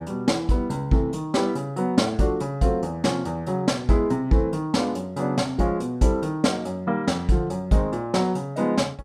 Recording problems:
none

